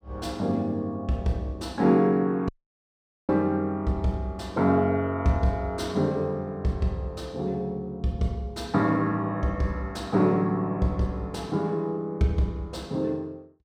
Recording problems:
dropout; at 2.5 s for 1 s

